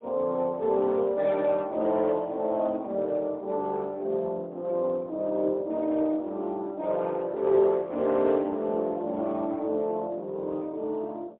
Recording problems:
telephone audio; 170 Hz to 3.5 kHz, AMR-NB, then MP3

